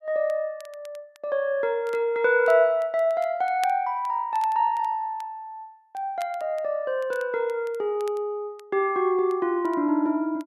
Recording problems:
crackling; vinyl, SNR 27 dB

